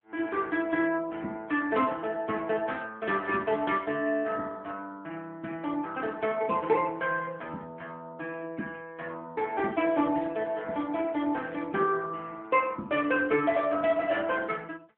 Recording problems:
telephone audio; 170 Hz to 3.4 kHz, AMR-NB

